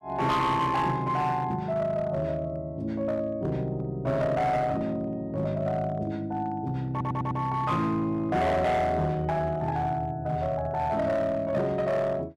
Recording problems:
distorted audio; hard clipping, uneven, signal-to-distortion ratio 11 dB
stutter; at 7 s

